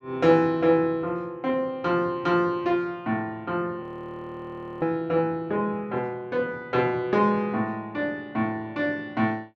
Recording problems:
frozen audio; at 4 s for 1 s

